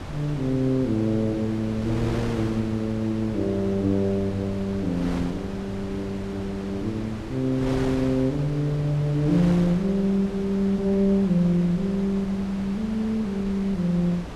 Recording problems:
wind on the microphone; below 740 Hz, SNR 11 dB

